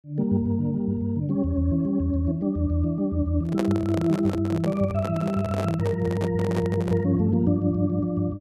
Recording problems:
handling noise; from 3.5 to 7 s; peak 0 dB vs average level

